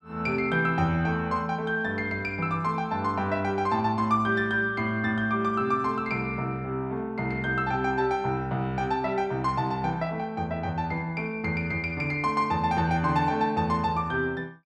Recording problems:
none

